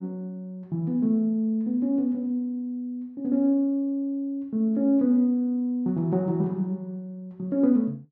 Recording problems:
none

